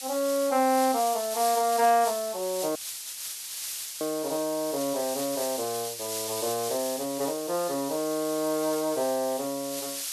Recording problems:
background hiss; slope +5 dB per octave, SNR 6 dB
audio cutting out; at 3 s for 1.5 s

